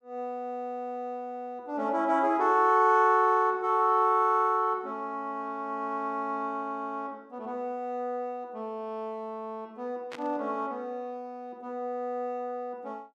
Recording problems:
burst of static; at 10 s; peak -8 dB vs average level

